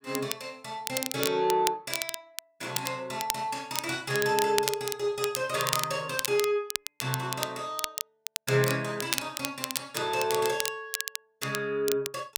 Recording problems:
crackling; vinyl, SNR 4 dB

